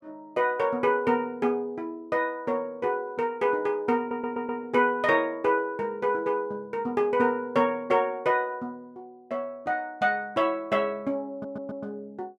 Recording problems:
audio stuttering; at 4 s and at 11 s

